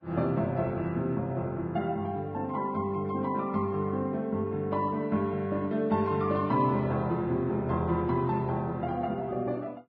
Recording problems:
codec artefacts; Vorbis, log-spectral distance 2 dB

